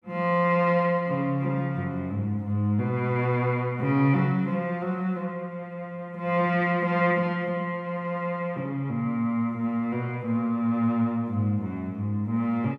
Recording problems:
none

